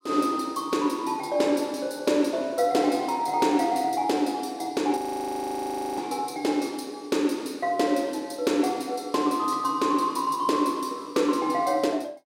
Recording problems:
audio freezing; at 5 s for 1 s

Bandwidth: 16 kHz